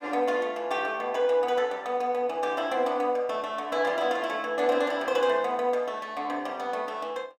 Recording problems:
none

